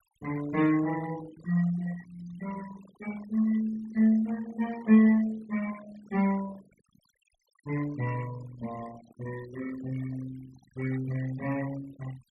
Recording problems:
denoising artefacts; signal-to-artefact ratio 19 dB

